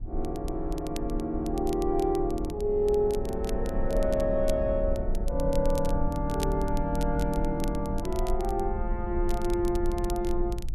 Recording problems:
rumble; below 54 Hz, SNR 6 dB
crackle; vinyl, SNR 18 dB

